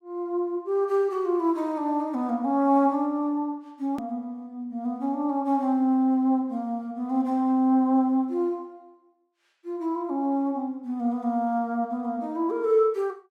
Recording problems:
edit click; at 4 s

